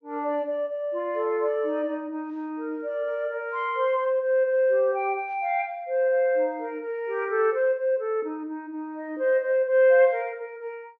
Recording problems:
low-pass filter; nothing above 8 kHz

